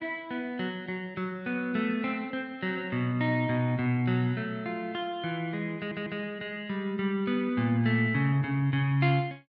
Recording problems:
stutter; at 6 s

